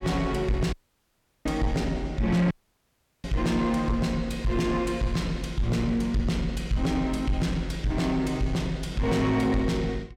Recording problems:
distorted audio; soft clipping, signal-to-distortion ratio 11 dB
dropout; at 0.5 s for 0.5 s and at 2.5 s for 0.5 s

